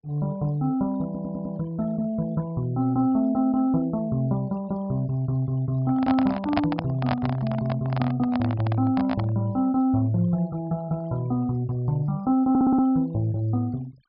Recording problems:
treble missing; nothing above 5.5 kHz
noise reduction artefacts; signal-to-artefact ratio 26 dB
stutter; at 1 s and at 12 s
microphone handling noise; from 6 to 9.5 s; peak +4 dB vs average level

